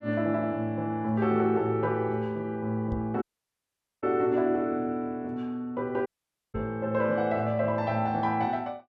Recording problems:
knock on the microphone; at 3 s and at 6.5 s; peak -4 dB vs average level
dropout; at 3 s for 1 s and at 6 s

